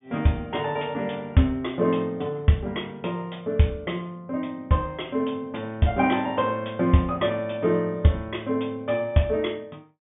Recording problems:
treble cut off; nothing above 3.6 kHz

